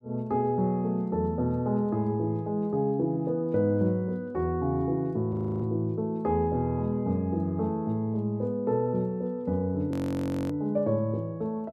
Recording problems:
audio freezing; at 5.5 s and at 10 s for 0.5 s

